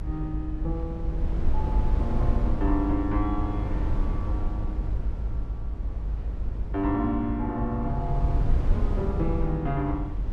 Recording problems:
rumble; below 72 Hz, SNR -1 dB
wind on the microphone; below 90 Hz, SNR 10 dB

